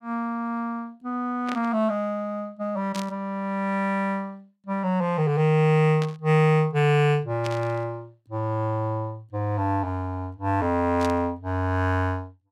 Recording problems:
static burst; 5 times, first at 1.5 s; peak -6 dB vs average level

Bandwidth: 16 kHz